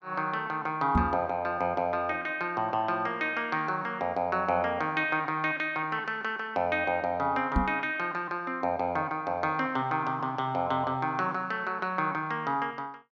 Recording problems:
microphone bump; at 1 s and at 7.5 s; peak +7 dB vs average level

